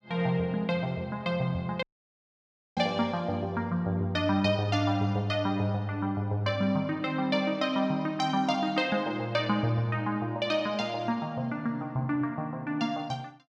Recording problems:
dropout; at 2 s for 1 s

